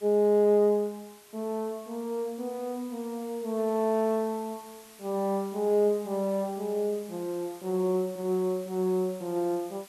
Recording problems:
background hiss; SNR 22 dB

